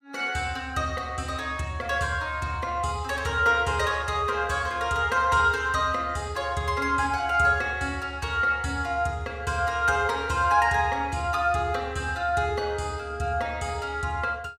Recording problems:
none

